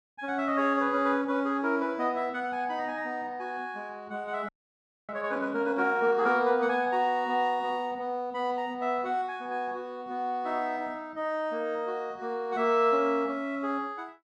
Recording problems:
frozen audio; at 4.5 s for 0.5 s

